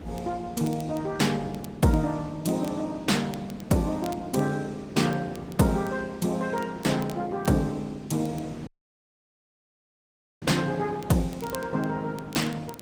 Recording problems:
lossy codec; Opus, log-spectral distance 3 dB
wind on the microphone; below 480 Hz, SNR 16 dB
crackle; vinyl, SNR 22 dB
audio cutting out; at 8.5 s for 2 s

